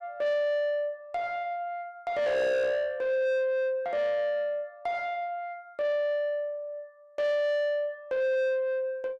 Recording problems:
distortion; soft clipping, signal-to-distortion ratio 7 dB

